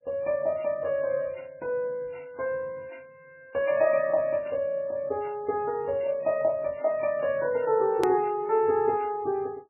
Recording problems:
lossy codec; MP3, log-spectral distance 2 dB, nothing above 13.1 kHz
edit click; at 8 s

